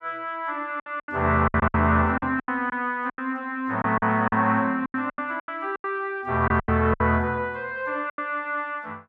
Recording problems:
lost packets; 13% of the sound replaced, filled with silence

